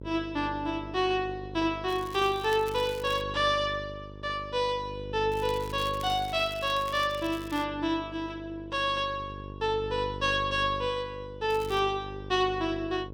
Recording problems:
hum; 50 Hz, harmonics up to 650 Hz, SNR 13 dB
crackle; from 2 to 3 s, from 5.5 to 7.5 s and at 12 s; loose cable, SNR 19 dB

